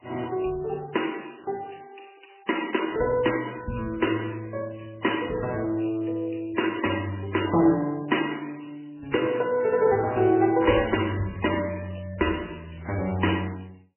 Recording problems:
lossy codec; AAC, then MP3, log-spectral distance 8 dB, nothing above 3 kHz

